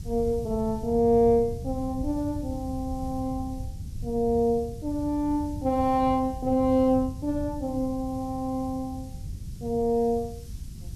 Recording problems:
background hiss; SNR 27 dB
wind noise; below 130 Hz, SNR 11 dB

